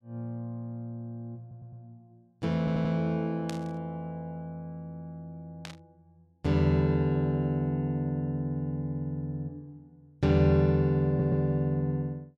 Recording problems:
stutter; at 1.5 s, at 2.5 s and at 11 s
burst of static; at 3.5 s and at 5.5 s; peak -7 dB vs average level

